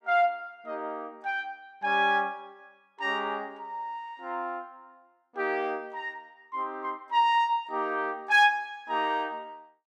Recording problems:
none

